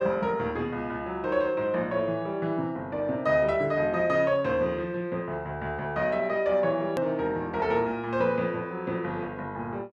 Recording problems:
hard cut with a click; at 7 s

